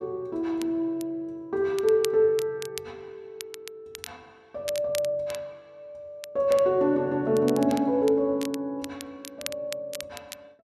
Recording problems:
crackle; vinyl, SNR 16 dB

